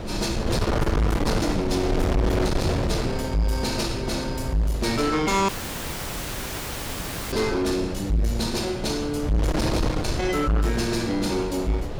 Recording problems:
distorted audio; soft clipping, signal-to-distortion ratio 8 dB
wind on the microphone; below 500 Hz, SNR 4 dB
audio cutting out; at 5.5 s for 2 s

